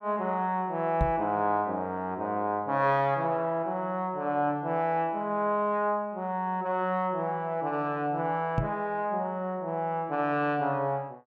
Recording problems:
knock on the microphone; at 1 s and at 8.5 s; peak +5 dB vs average level

